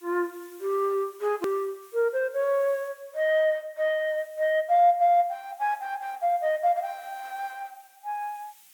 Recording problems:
background hiss; SNR 27 dB
click at an edit; at 1.5 s

